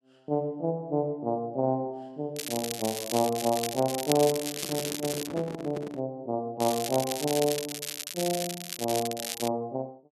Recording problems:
crackling; from 2.5 to 5.5 s and from 6.5 to 9.5 s; loose cable, SNR 4 dB
microphone handling noise; from 4.5 to 6 s; peak -3 dB vs average level

